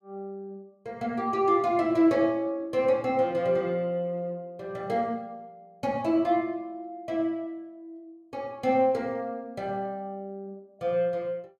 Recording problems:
none

